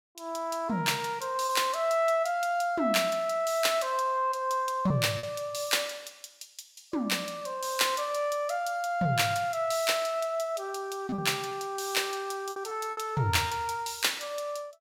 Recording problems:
lost packets; 3% of the sound replaced, filled with repeated pitch periods

